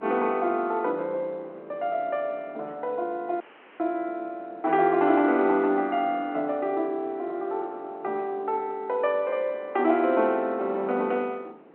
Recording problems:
phone line; 260 Hz to 3.2 kHz, G.711
wind noise; below 760 Hz, SNR 24 dB
audio cutting out; at 3.5 s

